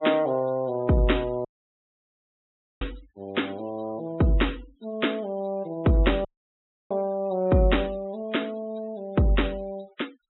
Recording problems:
treble cut off; nothing above 3.8 kHz
noise reduction artefacts; signal-to-artefact ratio 24 dB
audio cutting out; at 1.5 s for 1.5 s and at 6.5 s for 0.5 s

